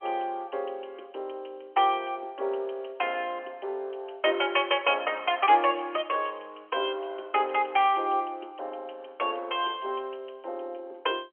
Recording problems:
telephone audio; 320 Hz to 3.2 kHz, G.711

